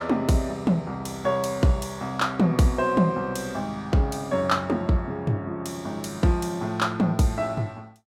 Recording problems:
none

